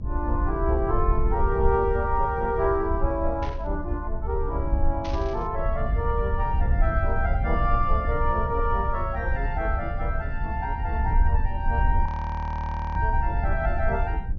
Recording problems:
treble missing; nothing above 6.5 kHz
low-frequency rumble; below 70 Hz, SNR 0 dB
burst of static; at 3.5 s and at 5 s; peak -8 dB vs average level
audio freezing; at 12 s for 1 s

